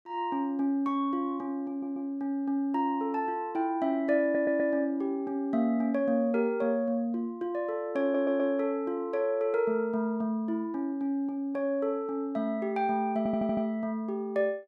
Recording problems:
audio stuttering; 4 times, first at 1.5 s

